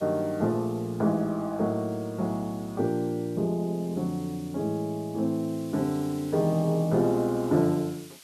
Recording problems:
hiss; slope +2 dB per octave, SNR 23 dB

